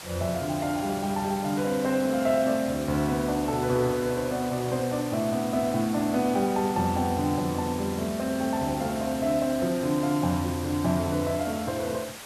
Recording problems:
hiss; slope -1 dB per octave, SNR 13 dB

